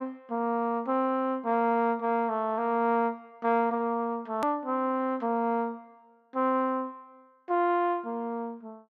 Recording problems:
hard cut with a click; at 4.5 s

